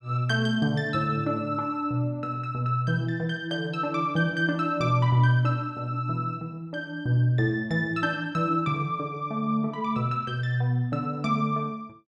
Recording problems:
none

